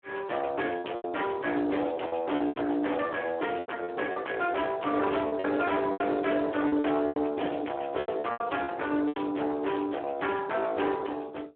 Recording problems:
phone line; 240 Hz to 3.3 kHz, Speex
distortion; soft clipping, signal-to-distortion ratio 7 dB
lost packets; 9% of the sound replaced, filled with repeated pitch periods

